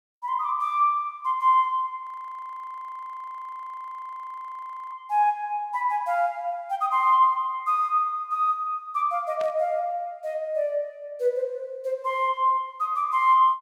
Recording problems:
frozen audio; at 2 s for 3 s
static burst; at 9.5 s; peak -12 dB vs average level

